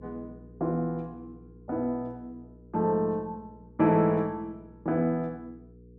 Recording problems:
hum; 60 Hz, harmonics up to 480 Hz, SNR 23 dB

